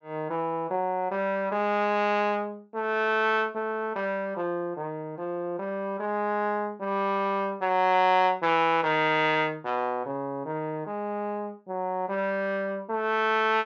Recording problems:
treble cut off; nothing above 7.8 kHz

